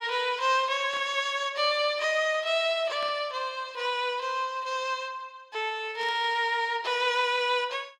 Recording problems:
static burst; at 1 s, at 3 s and at 6 s; peak -12 dB vs average level

